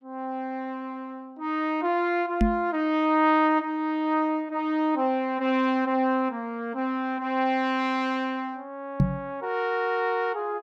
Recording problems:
knock on the microphone; at 2.5 s and at 9 s; peak +7 dB vs average level

